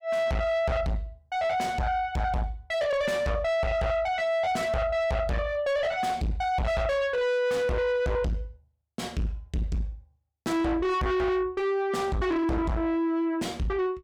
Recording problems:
distortion; soft clipping, signal-to-distortion ratio 5 dB

